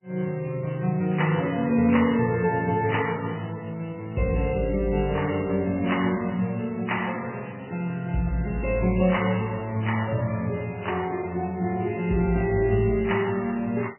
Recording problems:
codec artefacts; MP3, log-spectral distance 4 dB, nothing above 2.9 kHz

